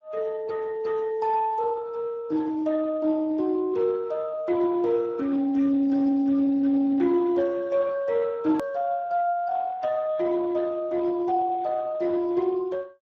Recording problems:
lossy codec; Speex, then Speex, log-spectral distance 3 dB
edit click; at 8.5 s

